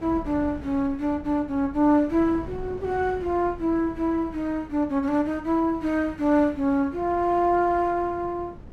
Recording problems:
wind noise; below 260 Hz, SNR 18 dB

